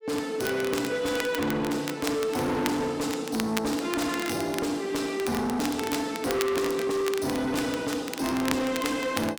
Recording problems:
distortion; hard clipping, signal-to-distortion ratio 7 dB
crackle; vinyl, SNR 10 dB

